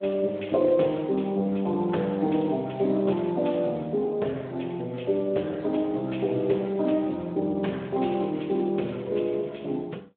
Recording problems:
phone line; 260 Hz to 3.4 kHz, Speex

